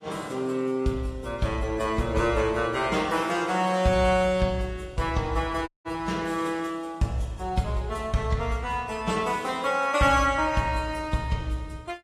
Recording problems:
lossy compression; AAC, log-spectral distance 3 dB, nothing above 14.3 kHz
audio cutting out; at 5.5 s

